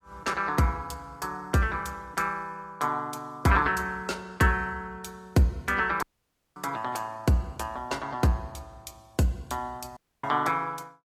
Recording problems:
lossy codec; AAC, log-spectral distance 2 dB
dropout; at 6 s for 0.5 s and at 10 s

